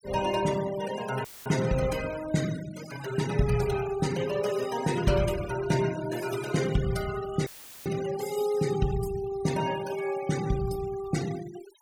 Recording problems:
denoising artefacts; signal-to-artefact ratio 12 dB
audio cutting out; at 1.5 s and at 7.5 s; filled with static

